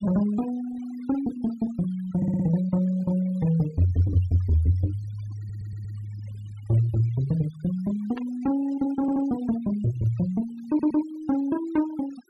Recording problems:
denoising artefacts; signal-to-artefact ratio 21 dB
stutter; 4 times, first at 2 s
burst of static; at 8 s; peak -12 dB vs average level

